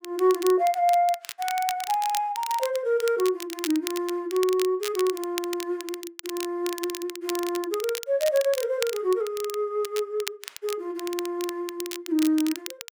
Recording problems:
crackle; vinyl, SNR 11 dB

